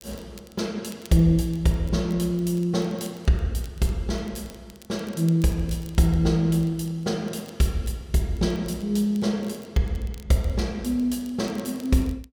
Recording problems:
crackling; vinyl, SNR 26 dB

